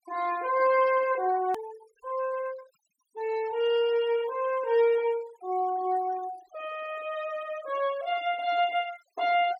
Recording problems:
noise reduction artefacts; signal-to-artefact ratio 21 dB
edit click; at 1.5 s

